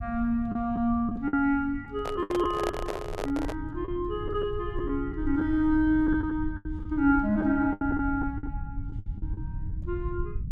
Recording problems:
low-frequency rumble; below 90 Hz, SNR 10 dB
packet loss; 8% of the sound replaced, filled with the last packet
handling noise; from 2 to 3.5 s; peak 0 dB vs average level

